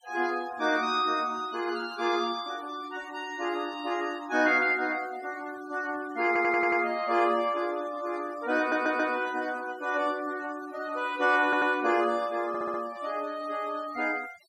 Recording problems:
noise reduction artefacts; signal-to-artefact ratio 20 dB
audio stuttering; 4 times, first at 6.5 s

